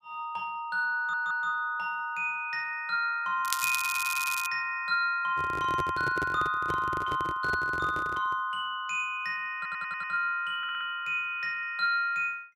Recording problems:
audio stuttering; 4 times, first at 1 s
crackle; from 3.5 to 4.5 s; loose cable, SNR 5 dB
handling noise; from 5.5 to 8.5 s; peak -2 dB vs average level

